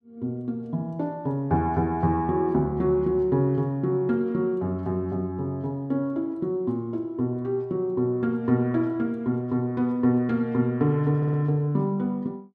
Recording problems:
audio stuttering; at 11 s

